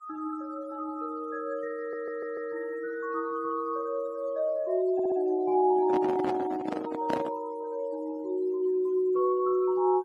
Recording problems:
noise reduction artefacts; signal-to-artefact ratio 24 dB
audio stuttering; at 2 s and at 5 s
microphone handling noise; from 5.5 to 7.5 s; peak +2 dB vs average level

